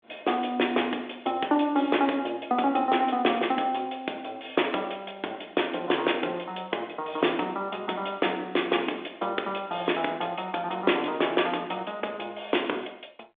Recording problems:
phone line; 280 Hz to 3.6 kHz, G.726

